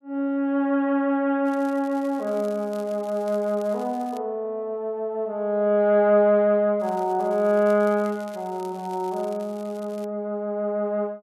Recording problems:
crackling; from 1.5 to 4 s and from 7 to 10 s; loose cable, SNR 27 dB

